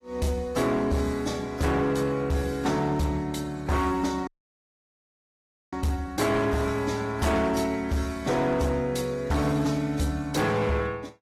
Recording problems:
lossy codec; AAC, log-spectral distance 3 dB
distorted audio; hard clipping, signal-to-distortion ratio 10 dB
dropout; at 4.5 s for 1.5 s

